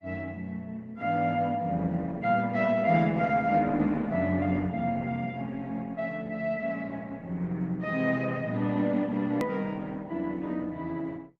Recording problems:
lossy compression; Opus, log-spectral distance 2 dB, nothing above 15.6 kHz
edit click; at 9.5 s

